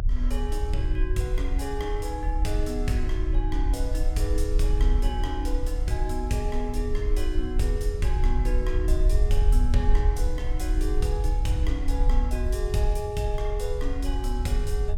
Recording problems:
rumble; below 52 Hz, SNR -3 dB

